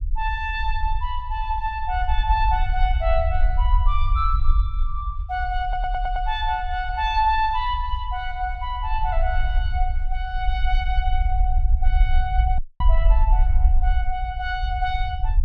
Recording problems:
rumble; below 54 Hz, SNR -1 dB
audio stuttering; at 5.5 s
audio cutting out; at 13 s

